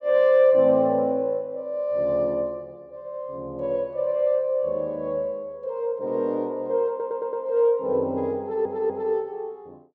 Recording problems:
stutter; at 7 s and at 8.5 s

